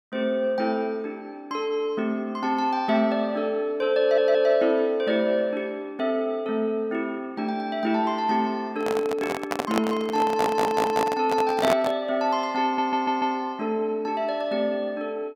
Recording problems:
audio stuttering; at 4 s, at 10 s and at 13 s
microphone handling noise; from 9 to 12 s; peak +3 dB vs average level

